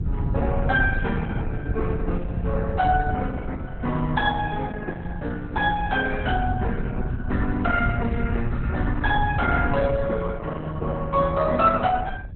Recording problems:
lossy codec; Opus, log-spectral distance 3 dB, nothing above 3.4 kHz
wind on the microphone; below 120 Hz, SNR 5 dB

